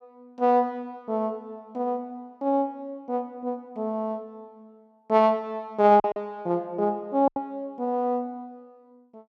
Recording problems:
lost packets; 2% of the sound replaced, filled with silence

